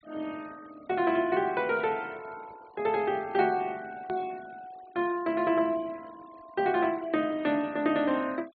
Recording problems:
low-pass filter; nothing above 4.5 kHz
denoising artefacts; signal-to-artefact ratio 24 dB
edit click; at 4 s

